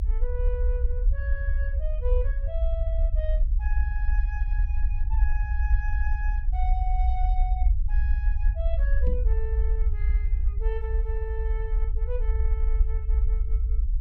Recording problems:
rumble; below 58 Hz, SNR -12 dB
microphone thump; at 9 s; peak +3 dB vs average level

